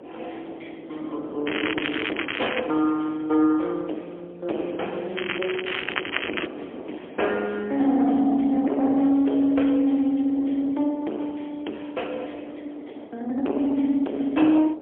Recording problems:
telephone audio; 240 Hz to 3.3 kHz, AMR-NB, then MP3
distorted audio; soft clipping, signal-to-distortion ratio 8 dB
wind noise; below 590 Hz, SNR 16 dB
crackle; from 1.5 to 2.5 s and from 5 to 6.5 s; loose cable, SNR 6 dB

